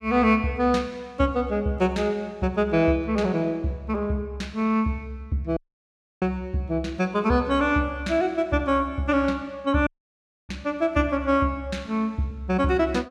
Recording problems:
dropout; at 5.5 s for 0.5 s and at 10 s for 0.5 s

